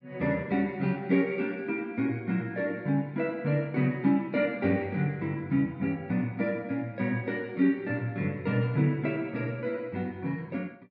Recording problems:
none

